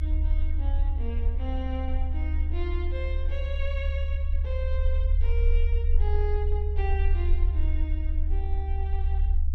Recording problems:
rumble; below 72 Hz, SNR -10 dB

